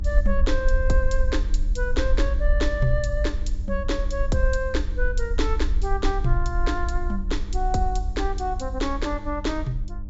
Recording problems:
treble missing; nothing above 8 kHz
hum; 50 Hz, harmonics up to 600 Hz, SNR 13 dB
low-frequency rumble; below 52 Hz, SNR 0 dB

